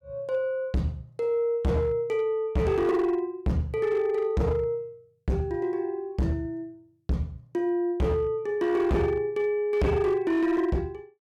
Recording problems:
distorted audio; hard clipping, signal-to-distortion ratio 7 dB

